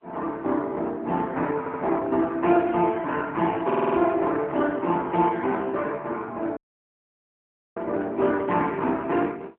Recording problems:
phone line; 240 Hz to 3.3 kHz, AMR-NB
audio stuttering; at 1.5 s and at 3.5 s
dropout; at 6.5 s for 1 s

